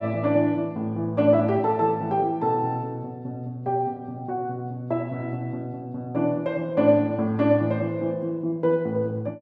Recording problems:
none

